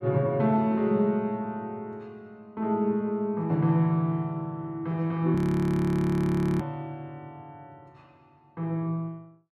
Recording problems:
frozen audio; at 5.5 s for 1.5 s

